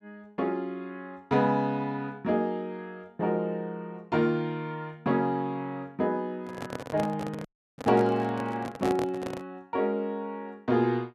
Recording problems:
microphone handling noise; from 6.5 to 9.5 s; peak 0 dB vs average level
dropout; at 7.5 s

